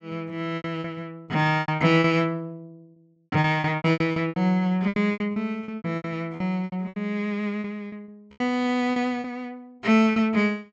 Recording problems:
treble missing; nothing above 8 kHz
packet loss; 17% of the sound replaced, filled with repeated pitch periods

